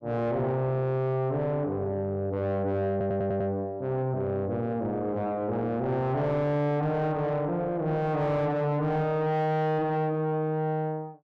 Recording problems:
distorted audio; soft clipping, signal-to-distortion ratio 7 dB
audio stuttering; at 3 s

